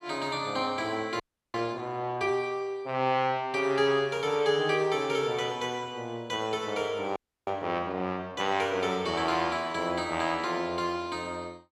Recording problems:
audio freezing; at 1 s and at 7 s

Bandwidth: 13.5 kHz